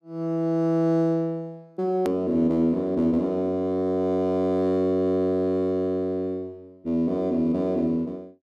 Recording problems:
hard cut with a click; at 2 s

